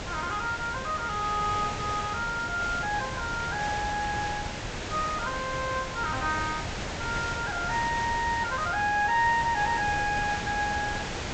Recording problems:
low-pass filter; nothing above 8 kHz
background hiss; slope -3 dB per octave, SNR 5 dB

